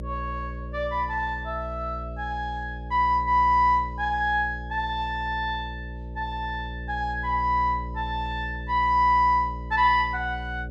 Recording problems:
hum; 60 Hz, harmonics up to 600 Hz, SNR 11 dB

